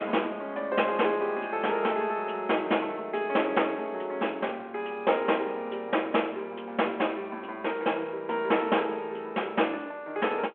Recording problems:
telephone audio; 280 Hz to 3.3 kHz, G.726

